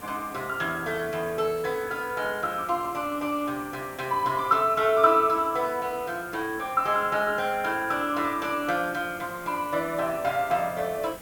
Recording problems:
hiss; slope -5 dB per octave, SNR 18 dB

